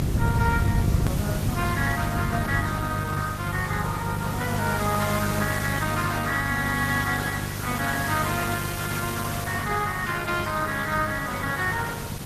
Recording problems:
lossy compression; Opus, log-spectral distance 6 dB
electrical hum; 50 Hz, harmonics up to 550 Hz, SNR 4 dB
hiss; slope -3 dB per octave, SNR 9 dB
low-frequency rumble; below 170 Hz, SNR 6 dB
edit click; at 1 s

